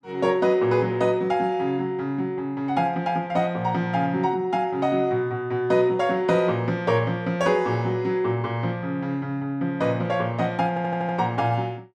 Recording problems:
stutter; at 11 s

